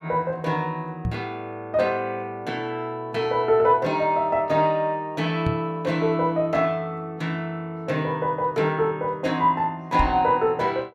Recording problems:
microphone thump; at 1 s, at 5.5 s and at 10 s; peak +1 dB vs average level

